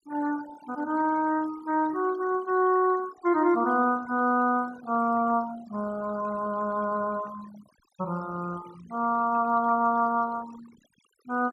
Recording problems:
denoising artefacts; signal-to-artefact ratio 21 dB

